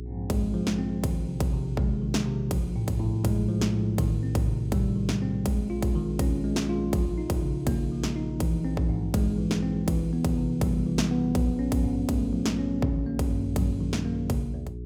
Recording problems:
hum; 60 Hz, harmonics up to 420 Hz, SNR 11 dB

